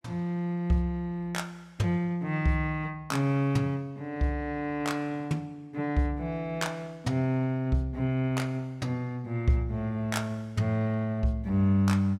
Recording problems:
none

